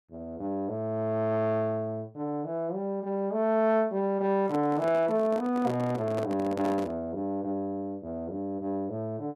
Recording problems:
microphone handling noise; from 4.5 to 7 s; peak -4 dB vs average level

